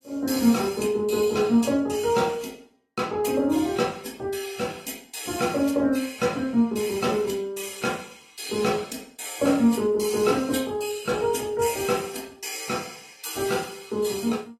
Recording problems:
lossy compression; AAC, log-spectral distance 4 dB, nothing above 13.8 kHz

